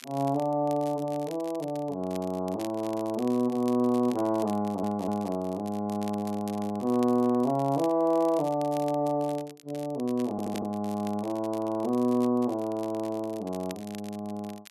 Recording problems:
crackling; vinyl, SNR 21 dB
stutter; at 4.5 s and at 10 s

